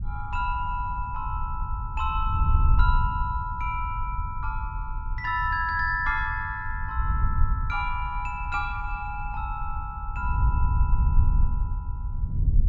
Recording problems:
wind noise; below 74 Hz, SNR 0 dB

